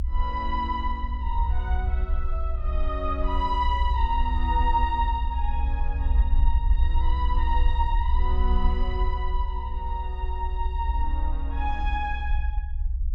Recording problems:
low-frequency rumble; below 62 Hz, SNR -3 dB

